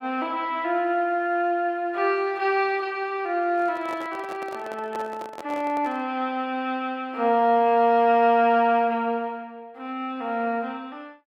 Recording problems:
microphone handling noise; from 3.5 to 6 s; peak -9 dB vs average level

